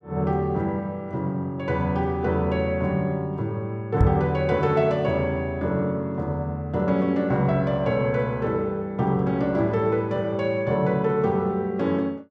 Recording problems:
knock on the microphone; at 4 s; peak +7 dB vs average level

